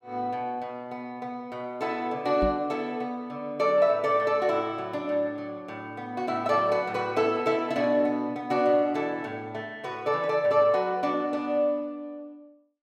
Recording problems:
microphone thump; at 2.5 s; peak +1 dB vs average level

